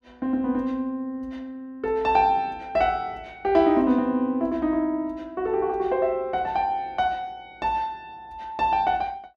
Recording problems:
none

